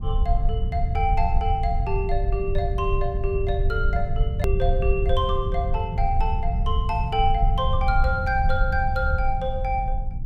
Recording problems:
rumble; below 76 Hz, SNR -1 dB
click at an edit; at 4.5 s

